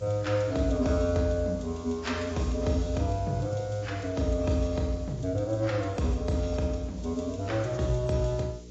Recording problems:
codec artefacts; AAC, log-spectral distance 7 dB, nothing above 7.6 kHz
mains hum; 60 Hz, harmonics up to 480 Hz, SNR 19 dB
hiss; SNR 25 dB

